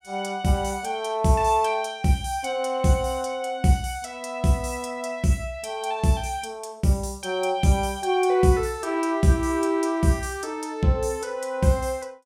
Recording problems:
none

